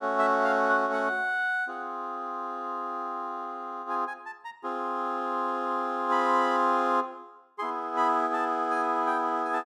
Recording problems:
none

